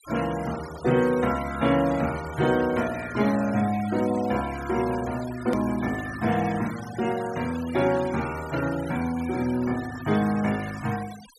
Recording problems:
denoising artefacts; signal-to-artefact ratio 16 dB
edit click; at 5.5 s

